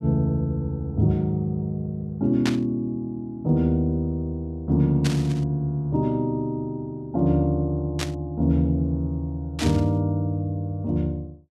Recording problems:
burst of static; 4 times, first at 2.5 s; peak 0 dB vs average level

